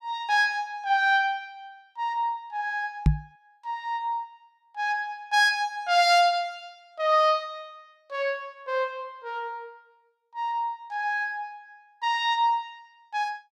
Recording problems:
microphone thump; at 3 s; peak +8 dB vs average level

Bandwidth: 15 kHz